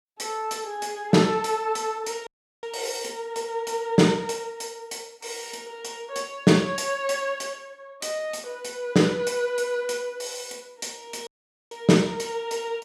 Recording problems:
dropout; at 2.5 s and at 11 s

